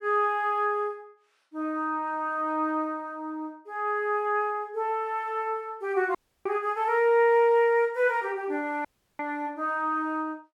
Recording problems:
dropout; at 6 s and at 9 s

